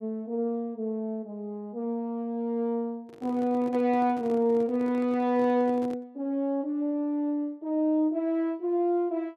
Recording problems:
microphone handling noise; from 3 to 6 s; peak -11 dB vs average level

